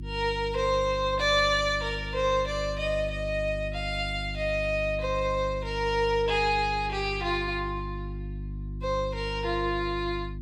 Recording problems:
mains hum; 50 Hz, harmonics up to 350 Hz, SNR 9 dB

